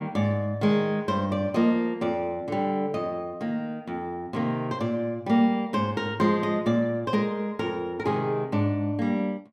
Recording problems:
none

